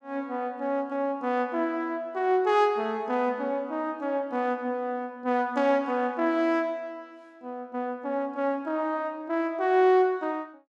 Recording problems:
none

